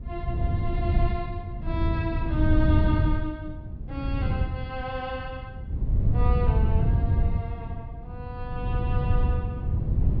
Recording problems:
treble cut off; nothing above 5.5 kHz
wind noise; below 110 Hz, SNR -7 dB

